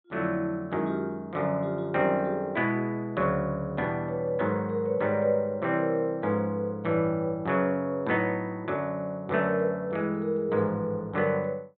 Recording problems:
low-pass filter; nothing above 4 kHz

